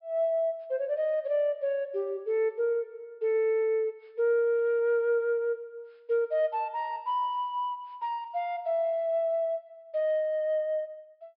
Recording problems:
low-pass filter; nothing above 5.5 kHz

